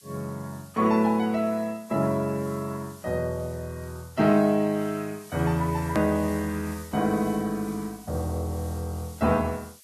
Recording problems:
lossy compression; Vorbis, log-spectral distance 2 dB, nothing above 13.1 kHz
hiss; slope +7 dB per octave, SNR 21 dB
hard cut with a click; at 6 s

